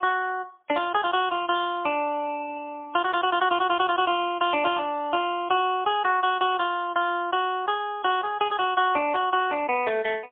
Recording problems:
telephone audio; 260 Hz to 3.5 kHz, AMR-NB, then MP3
burst of static; 4 times, first at 1.5 s; peak -17 dB vs average level

